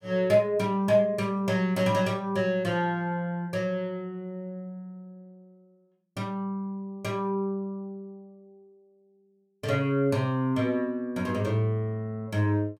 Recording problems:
none

